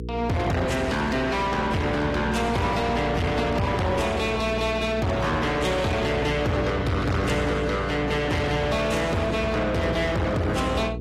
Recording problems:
codec artefacts; AAC, log-spectral distance 3 dB
distorted audio; soft clipping, signal-to-distortion ratio 5 dB
hum; 60 Hz, harmonics up to 480 Hz, SNR 9 dB

